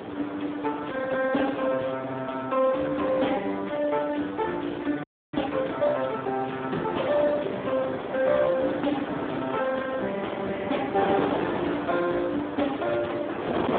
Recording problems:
telephone audio; 220 Hz to 3.6 kHz, Speex
distorted audio; hard clipping, signal-to-distortion ratio 13 dB
wind on the microphone; below 970 Hz, SNR 7 dB
audio freezing; at 5 s

